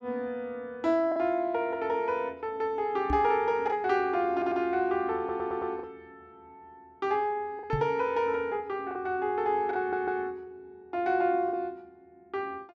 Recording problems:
packet loss; 3% of the sound replaced, filled with the last packet
microphone bump; at 3 s and at 7.5 s; peak +2 dB vs average level
stutter; at 4.5 s, at 5 s and at 10 s

